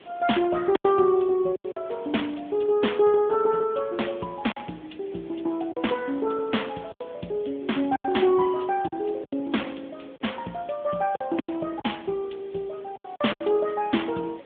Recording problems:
telephone audio; 130 Hz to 3.5 kHz, AMR-NB
background hiss; SNR 24 dB
packet loss; 7% of the sound replaced, filled with silence

